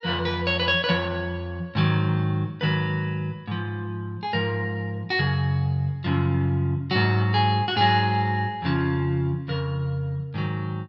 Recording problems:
none

